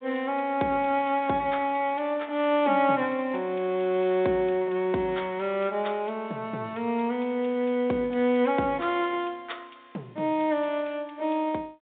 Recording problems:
telephone audio; 150 Hz to 3.7 kHz, G.726

